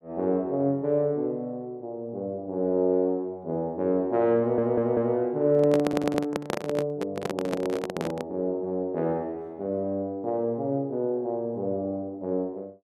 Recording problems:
stutter; at 4.5 s and at 6 s
microphone handling noise; from 5.5 to 8.5 s; peak +2 dB vs average level

